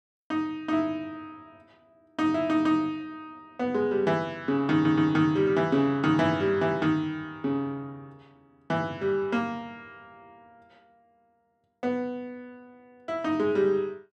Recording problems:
stutter; at 4.5 s

